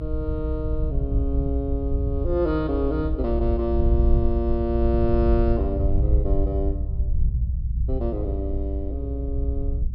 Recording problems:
treble missing; nothing above 5.5 kHz
low-frequency rumble; below 72 Hz, SNR -1 dB

